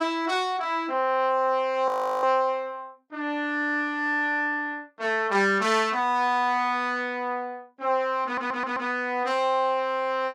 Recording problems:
audio freezing; at 2 s
stutter; at 8.5 s

